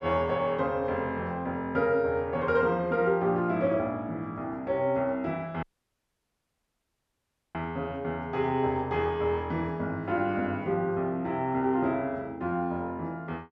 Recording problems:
dropout; at 5.5 s for 2 s

